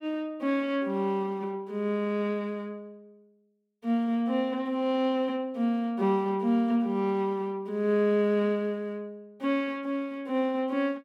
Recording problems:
none

